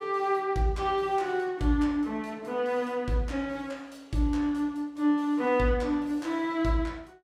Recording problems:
none

